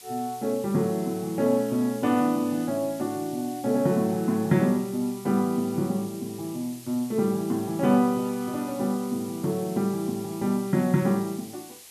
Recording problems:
background hiss; SNR 18 dB

